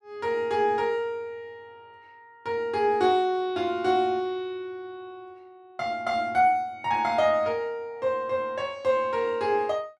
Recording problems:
none

